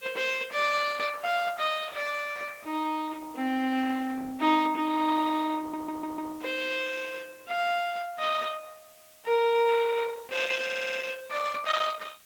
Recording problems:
lossy codec; Opus, log-spectral distance 5 dB
background hiss; slope +1 dB per octave, SNR 24 dB
audio stuttering; at 5.5 s and at 11 s

